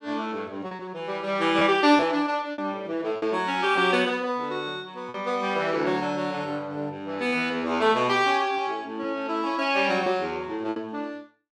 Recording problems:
packet loss; 4% of the sound replaced, filled with repeated pitch periods

